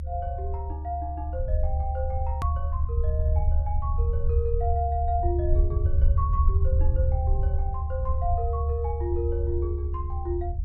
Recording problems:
low-frequency rumble; below 76 Hz, SNR -6 dB
hard cut with a click; at 2.5 s

